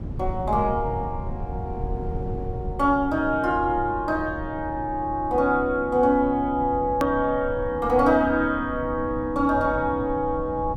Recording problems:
low-frequency rumble; below 160 Hz, SNR 12 dB
edit click; at 7 s

